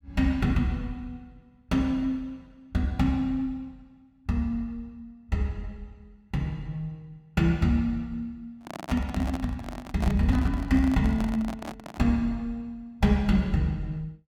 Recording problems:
handling noise; from 8.5 to 12 s; peak -3 dB vs average level

